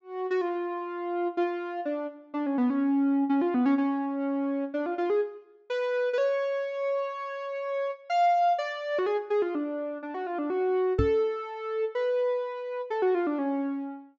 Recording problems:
treble missing; nothing above 8 kHz
microphone bump; at 11 s; peak +5 dB vs average level

